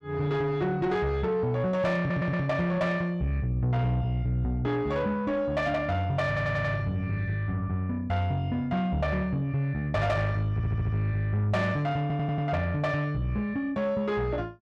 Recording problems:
distortion; soft clipping, signal-to-distortion ratio 11 dB
audio stuttering; 4 times, first at 2 s

